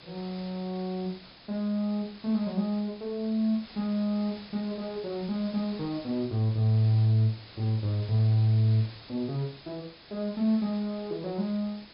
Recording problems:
treble missing; nothing above 5.5 kHz
hiss; SNR 19 dB

